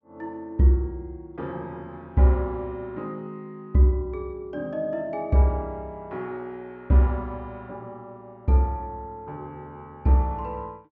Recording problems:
low-pass filter; nothing above 7.7 kHz

